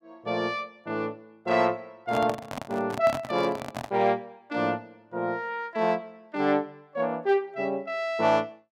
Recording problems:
handling noise; from 2 to 4 s; peak -1 dB vs average level

